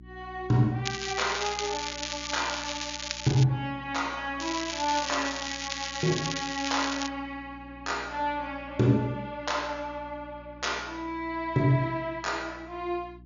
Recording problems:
low-pass filter; nothing above 7.1 kHz
electrical hum; 60 Hz, harmonics up to 360 Hz, SNR 20 dB
crackling; from 1 to 3.5 s and from 4.5 to 7 s; loose cable, SNR 4 dB

